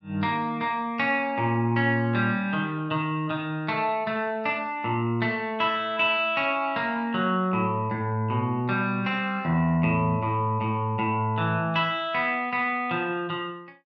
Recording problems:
none

